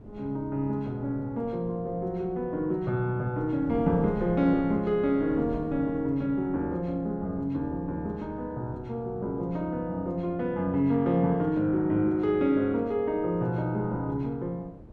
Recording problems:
wind on the microphone; below 320 Hz, SNR 17 dB

